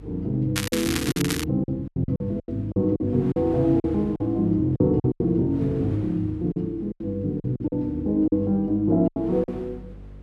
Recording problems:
hum; 50 Hz, harmonics up to 550 Hz, SNR 21 dB
wind noise; below 780 Hz, SNR 25 dB
lost packets; 11% of the sound replaced, filled with silence
crackling; at 0.5 s; loose cable, SNR 6 dB

